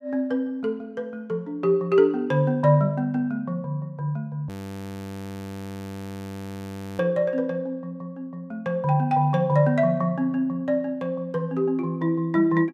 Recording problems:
frozen audio; at 4.5 s for 2.5 s

